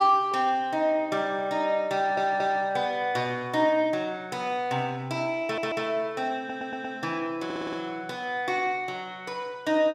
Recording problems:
audio stuttering; 4 times, first at 2 s

